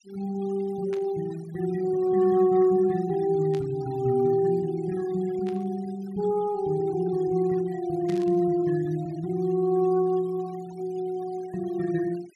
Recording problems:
noise reduction artefacts; signal-to-artefact ratio 23 dB
static burst; 4 times, first at 1 s; peak -14 dB vs average level

